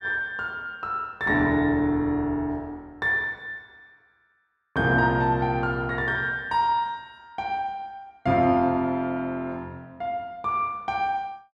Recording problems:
none

